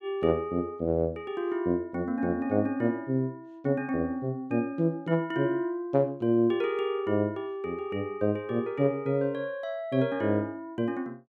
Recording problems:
none

